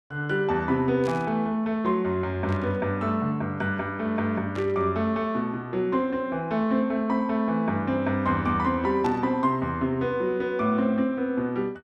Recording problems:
static burst; 4 times, first at 1 s; peak -12 dB vs average level

